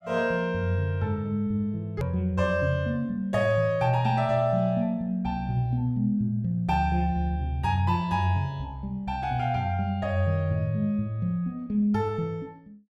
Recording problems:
edit click; at 2 s

